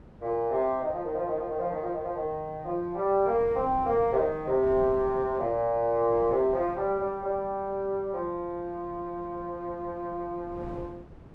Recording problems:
wind on the microphone; below 380 Hz, SNR 18 dB

